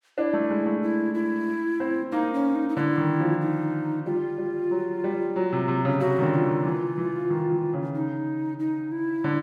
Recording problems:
none

